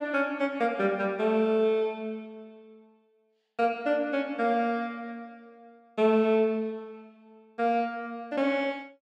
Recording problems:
none

